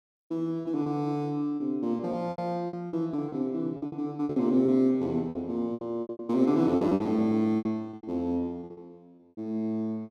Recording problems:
packet loss; 15% of the sound replaced, filled with repeated pitch periods

